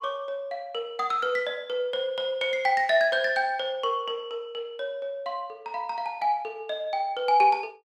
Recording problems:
none

